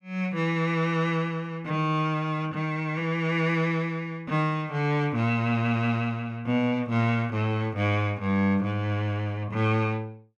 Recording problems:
none

